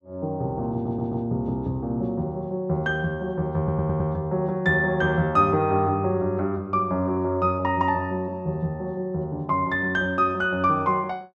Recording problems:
stutter; at 0.5 s and at 3.5 s

